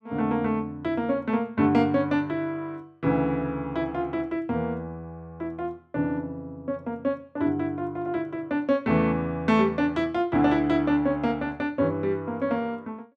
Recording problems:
none

